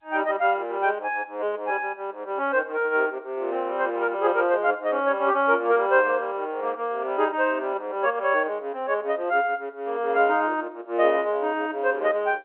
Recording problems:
telephone audio; 300 Hz to 3.3 kHz, G.711

